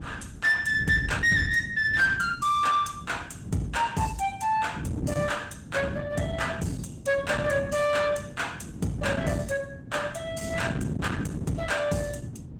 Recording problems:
codec artefacts; Opus, log-spectral distance 3 dB, nothing above 19 kHz
distortion; soft clipping, signal-to-distortion ratio 11 dB
wind on the microphone; below 260 Hz, SNR 8 dB

